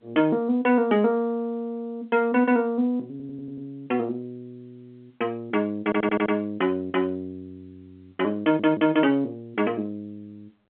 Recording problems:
phone line; 220 Hz to 3.4 kHz, G.711
stutter; at 3 s, at 6 s and at 8.5 s

